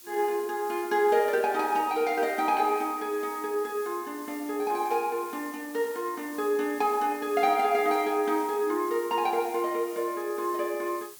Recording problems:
background hiss; slope +1 dB per octave, SNR 18 dB

